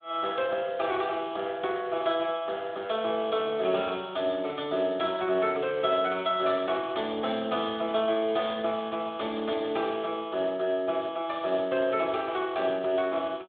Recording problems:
telephone audio; 240 Hz to 3.6 kHz, Speex

